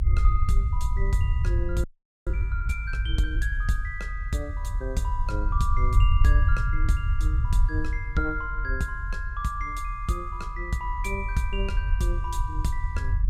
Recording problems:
low-frequency rumble; below 70 Hz, SNR -3 dB
frozen audio; at 2 s

